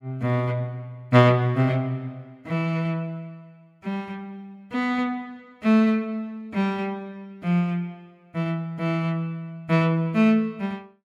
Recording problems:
none

